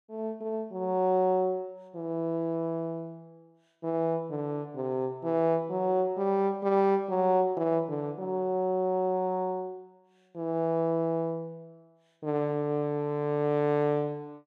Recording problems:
none

